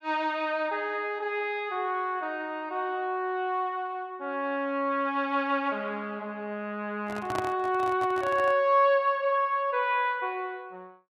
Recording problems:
microphone handling noise; from 7 to 8.5 s; peak -2 dB vs average level

